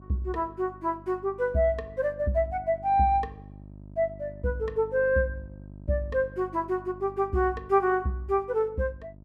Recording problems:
mains hum; 50 Hz, harmonics up to 650 Hz, SNR 19 dB

